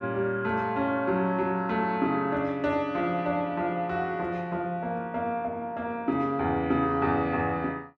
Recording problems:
none

